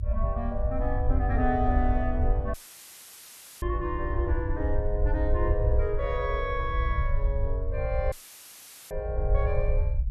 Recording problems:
rumble; below 72 Hz, SNR -2 dB
dropout; at 2.5 s for 1 s and at 8 s for 1 s; filled with static

